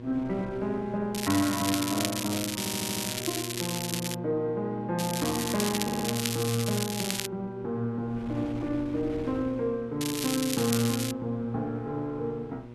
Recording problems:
hum; 60 Hz, harmonics up to 1.1 kHz, SNR 11 dB
wind noise; below 570 Hz, SNR 20 dB
crackle; from 1 to 4 s, from 5 to 7.5 s and from 10 to 11 s; loose cable, SNR 2 dB
audio stuttering; at 2.5 s and at 6 s

